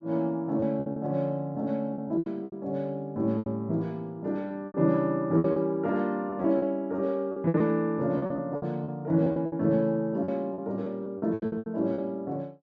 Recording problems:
low-pass filter; nothing above 8 kHz
lost packets; 13% of the sound replaced, filled with repeated pitch periods

